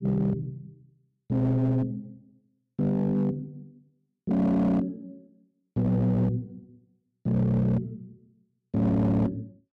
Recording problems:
distorted audio; hard clipping, signal-to-distortion ratio 11 dB

